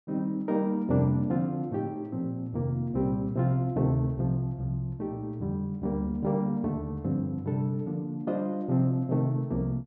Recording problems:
none

